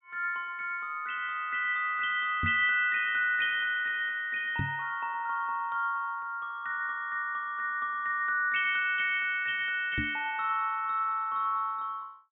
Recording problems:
treble missing; nothing above 4 kHz
microphone bump; at 2.5 s, at 4.5 s and at 10 s; peak -1 dB vs average level

